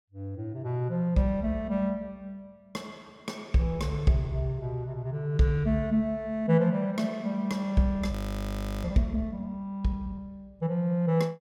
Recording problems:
frozen audio; at 8 s for 0.5 s

